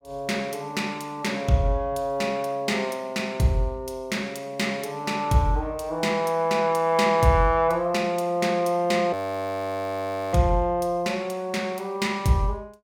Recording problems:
audio freezing; at 9 s for 1 s

